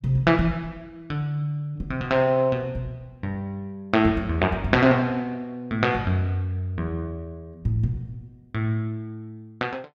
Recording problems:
none

